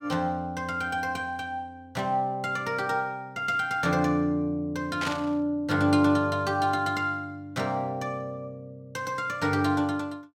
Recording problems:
static burst; at 5 s; peak -2 dB vs average level

